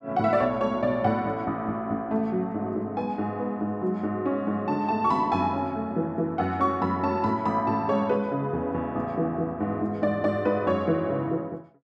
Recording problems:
none

